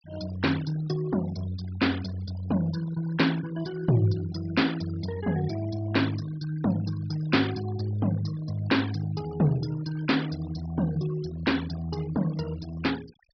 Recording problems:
treble missing; nothing above 5.5 kHz
noise reduction artefacts; signal-to-artefact ratio 17 dB

